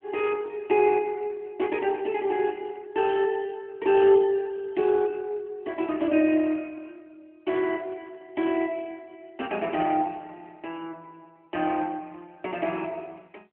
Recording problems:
phone line; 260 Hz to 3.3 kHz, AMR-NB

